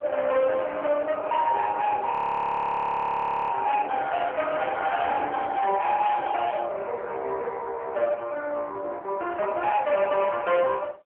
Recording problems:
telephone audio; 370 Hz to 3.2 kHz, AMR-NB
distorted audio; hard clipping, signal-to-distortion ratio 12 dB
audio freezing; at 2 s for 1.5 s

